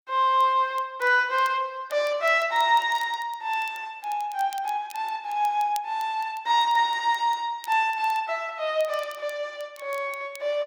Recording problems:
crackling; vinyl, SNR 24 dB

